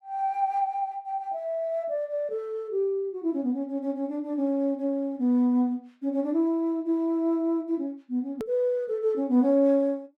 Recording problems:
edit click; at 8.5 s

